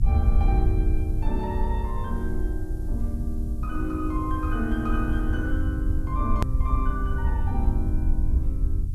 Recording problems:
electrical hum; 60 Hz, harmonics up to 360 Hz, SNR 17 dB
hiss; SNR 27 dB
rumble; below 76 Hz, SNR -5 dB
edit click; at 6.5 s

